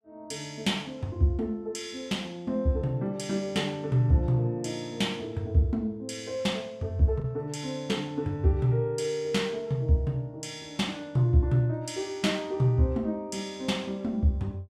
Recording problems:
lost packets; 0.3% of the sound replaced, filled with the last packet

